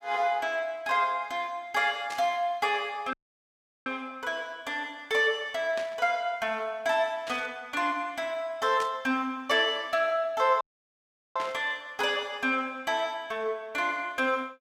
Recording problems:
burst of static; 5 times, first at 2 s; peak -6 dB vs average level
dropout; at 3 s for 0.5 s and at 11 s for 0.5 s

